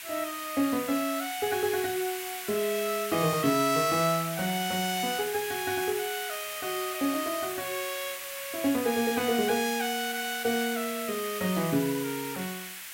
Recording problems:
background hiss; SNR 7 dB

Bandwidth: 16 kHz